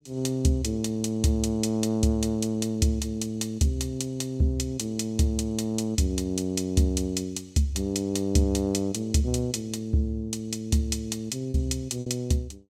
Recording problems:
packet loss; 0.8% of the sound replaced, filled with repeated pitch periods

